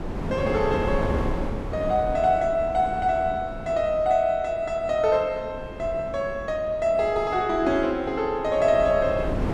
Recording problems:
wind on the microphone; below 420 Hz, SNR 9 dB

